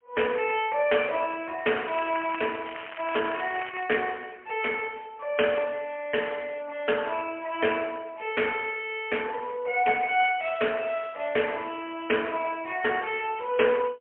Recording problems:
phone line; 320 Hz to 3.1 kHz, AMR-NB, then MP3
crackling; from 1.5 to 4 s; loose cable, SNR 12 dB

